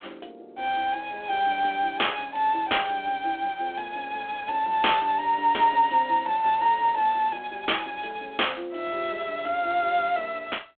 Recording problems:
telephone audio; 300 Hz to 3.5 kHz, G.726

